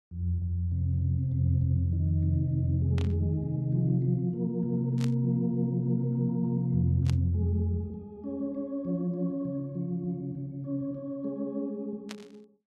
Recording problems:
burst of static; 4 times, first at 3 s; peak -8 dB vs average level

